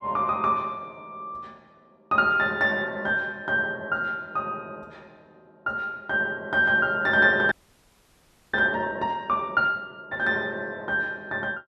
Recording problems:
frozen audio; at 7.5 s for 1 s

